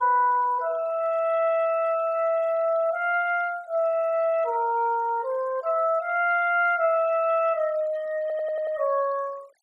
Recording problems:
noise reduction artefacts; signal-to-artefact ratio 26 dB
stutter; at 8 s

